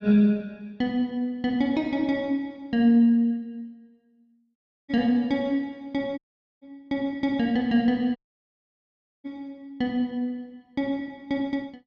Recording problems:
audio cutting out; at 4.5 s, at 6 s and at 8 s for 1 s

